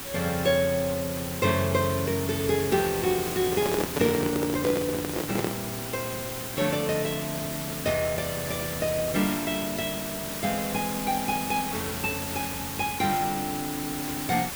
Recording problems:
background hiss; slope -2 dB per octave, SNR 5 dB
microphone handling noise; from 3.5 to 5.5 s; peak +4 dB vs average level

